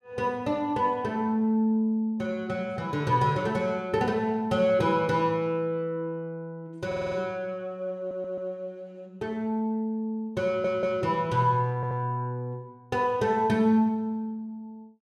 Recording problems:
audio stuttering; 4 times, first at 7 s

